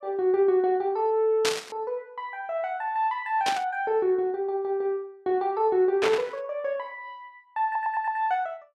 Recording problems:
burst of static; at 1.5 s, at 3.5 s and at 6 s; peak +4 dB vs average level
audio stuttering; at 7.5 s

